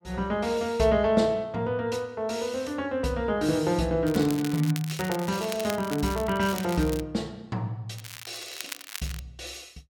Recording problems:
crackling; from 4 to 7 s and from 8 to 9 s; loose cable, SNR 12 dB

